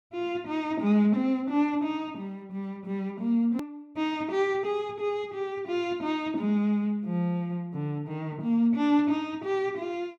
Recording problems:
hard cut with a click; at 3.5 s

